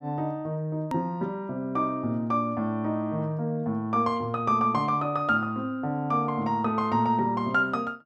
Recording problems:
hard cut with a click; at 1 s

